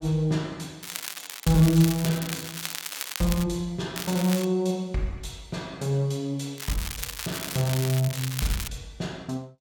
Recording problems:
crackling; from 1 to 3.5 s, at 4 s and from 6.5 to 8.5 s; loose cable, SNR 7 dB

